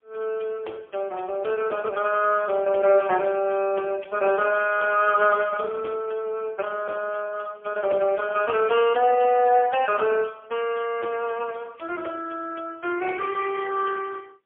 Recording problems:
telephone audio; 300 Hz to 3.3 kHz, AMR-NB, then MP3

